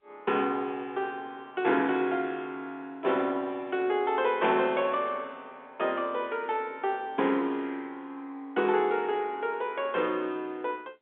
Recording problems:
telephone audio; 220 Hz to 3.7 kHz, G.711

